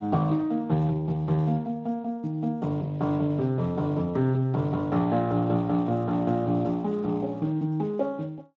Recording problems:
lossy codec; Speex, log-spectral distance 2 dB

